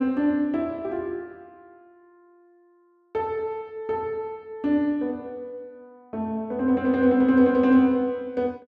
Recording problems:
none

